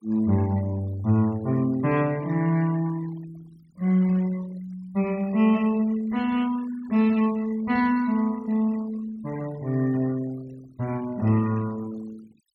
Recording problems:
denoising artefacts; signal-to-artefact ratio 22 dB

